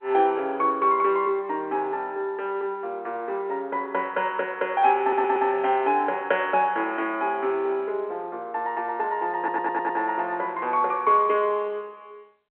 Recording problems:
telephone audio; 300 Hz to 3.4 kHz, G.711
audio stuttering; at 5 s and at 9.5 s

